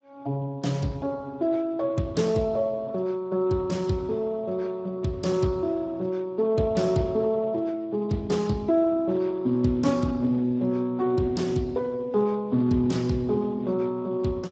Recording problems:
lossy codec; Speex, log-spectral distance 2 dB, nothing above 7.6 kHz

